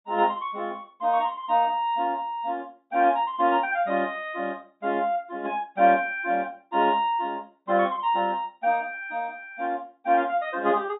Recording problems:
treble missing; nothing above 4 kHz

